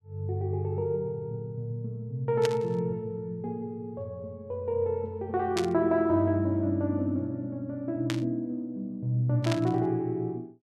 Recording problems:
burst of static; 4 times, first at 2.5 s; peak +1 dB vs average level

